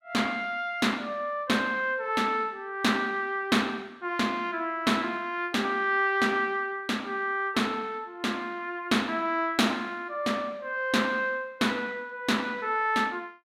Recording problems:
none

